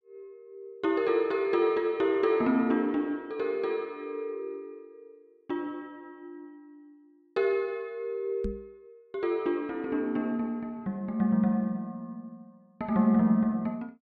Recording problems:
knock on the microphone; at 8.5 s; peak -2 dB vs average level

